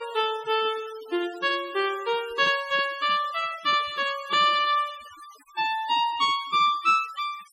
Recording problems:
denoising artefacts; signal-to-artefact ratio 19 dB

